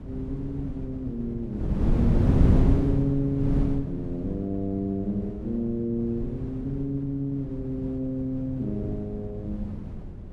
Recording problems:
wind noise; below 190 Hz, SNR 0 dB

